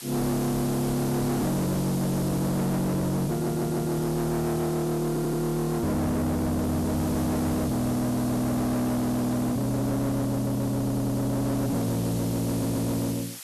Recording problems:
distorted audio; soft clipping, signal-to-distortion ratio 5 dB
background hiss; slope +3 dB per octave, SNR 13 dB
audio stuttering; 4 times, first at 3.5 s

